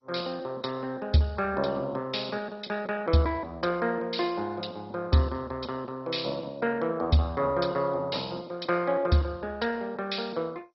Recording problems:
codec artefacts; MP2, then MP2, log-spectral distance 5 dB, nothing above 5.5 kHz

